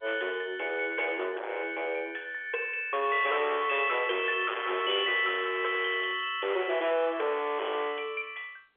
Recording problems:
phone line; 340 Hz to 3.7 kHz, G.711
distorted audio; soft clipping, signal-to-distortion ratio 8 dB

